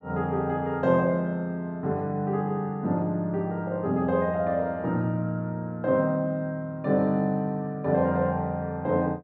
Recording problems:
none

